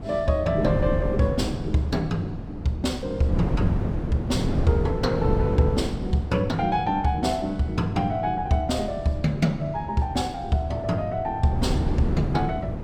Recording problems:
wind on the microphone; below 240 Hz, SNR 4 dB

